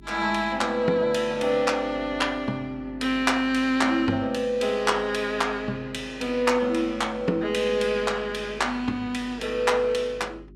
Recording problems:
hum; 50 Hz, harmonics up to 400 Hz, SNR 22 dB

